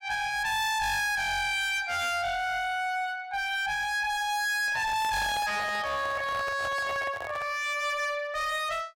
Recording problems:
distortion; hard clipping, uneven, signal-to-distortion ratio 6 dB
microphone handling noise; from 4.5 to 7.5 s; peak -6 dB vs average level

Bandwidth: 16 kHz